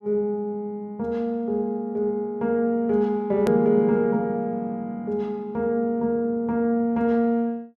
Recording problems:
hard cut with a click; at 3.5 s

